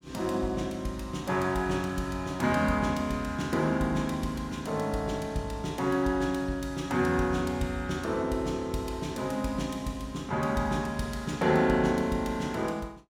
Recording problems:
none

